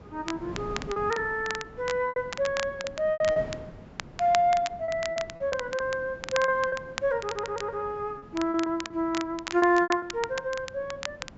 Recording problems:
treble cut off; nothing above 7.5 kHz
wind on the microphone; below 460 Hz, SNR 18 dB
crackling; vinyl, SNR 11 dB
packet loss; 10% of the sound replaced, filled with repeated pitch periods
audio stuttering; at 7 s

